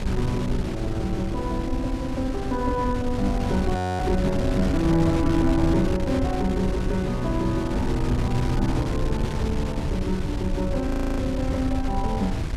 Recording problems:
wind on the microphone; below 140 Hz, SNR 2 dB
audio freezing; at 4 s and at 11 s

